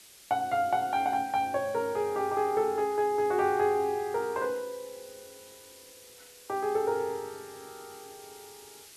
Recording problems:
background hiss; SNR 21 dB

